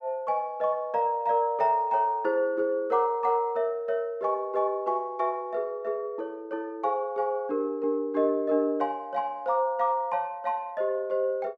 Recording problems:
none

